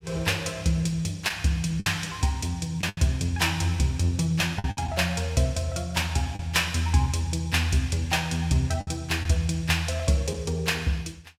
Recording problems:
lost packets; 4% of the sound replaced, filled with the last packet

